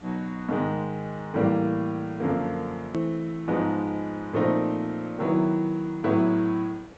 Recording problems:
low-pass filter; nothing above 8 kHz
background hiss; slope -6 dB per octave, SNR 23 dB
hard cut with a click; at 3 s

